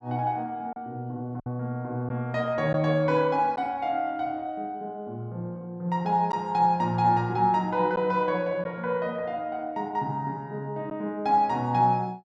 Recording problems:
packet loss; 1.3% of the sound replaced, filled with silence

